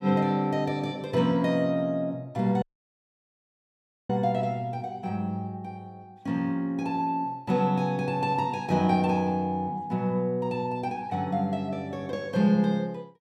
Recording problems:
audio cutting out; at 2.5 s for 1.5 s

